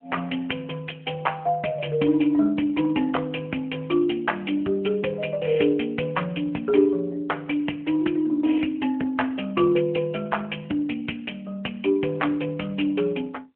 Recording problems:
telephone audio; 220 Hz to 3.1 kHz, AMR-NB

